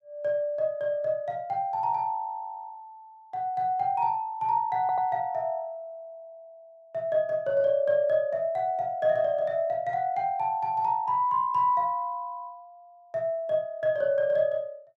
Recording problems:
audio stuttering; at 5 s

